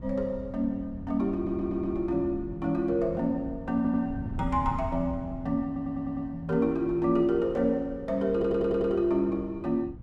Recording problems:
wind on the microphone; below 140 Hz, SNR 14 dB
audio stuttering; 4 times, first at 1.5 s

